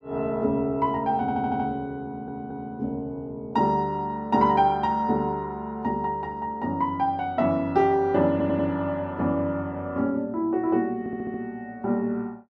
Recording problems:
audio stuttering; 4 times, first at 1 s

